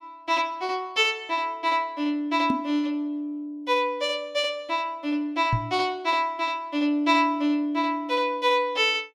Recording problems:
knock on the microphone; at 2.5 s and at 5.5 s; peak +3 dB vs average level

